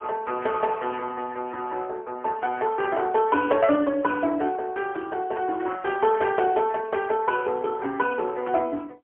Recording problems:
telephone audio; 260 Hz to 3.5 kHz, AMR-NB, then MP3

